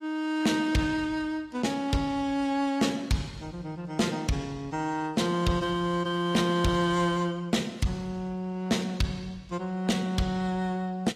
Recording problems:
codec artefacts; AAC, log-spectral distance 2 dB, nothing above 14.3 kHz
distorted audio; soft clipping, signal-to-distortion ratio 11 dB

